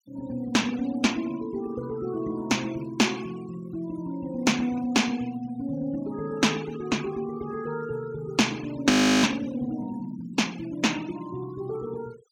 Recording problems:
denoising artefacts; signal-to-artefact ratio 20 dB
audio freezing; at 9 s

